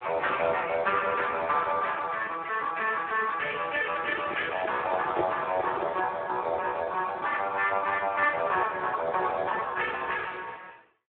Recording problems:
phone line; 260 Hz to 2.3 kHz, Speex
microphone handling noise; from 4 to 6 s; peak +3 dB vs average level

